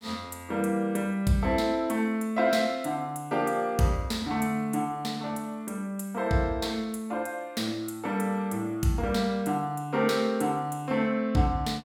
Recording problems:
none

